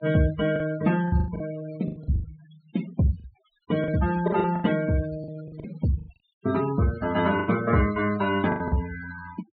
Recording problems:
low-pass filter; nothing above 4.5 kHz
noise reduction artefacts; signal-to-artefact ratio 13 dB
lost packets; 12% of the sound replaced, filled with the last packet

